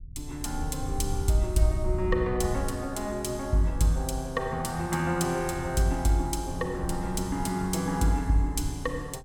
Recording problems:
rumble; below 90 Hz, SNR 9 dB

